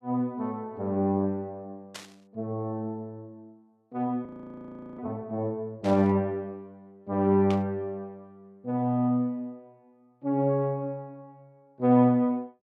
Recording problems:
burst of static; at 2 s, at 6 s and at 7.5 s; peak -7 dB vs average level
audio freezing; at 4.5 s for 0.5 s

